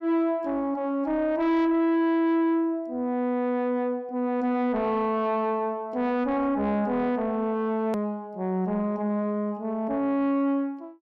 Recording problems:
distorted audio; soft clipping, signal-to-distortion ratio 10 dB
hard cut with a click; at 8 s

